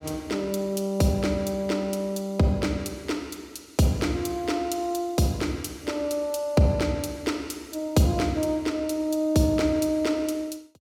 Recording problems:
none

